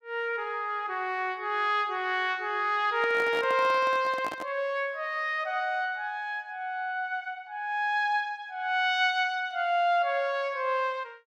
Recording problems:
handling noise; from 3 to 4.5 s; peak -6 dB vs average level

